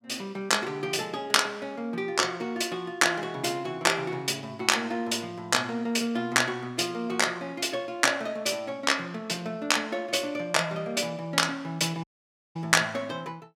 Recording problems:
audio cutting out; at 12 s for 0.5 s

